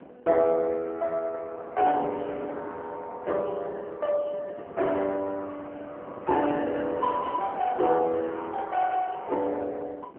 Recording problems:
phone line; 260 Hz to 3 kHz, AMR-NB
wind noise; below 660 Hz, SNR 20 dB

